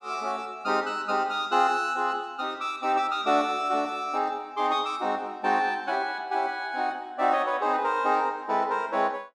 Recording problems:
none

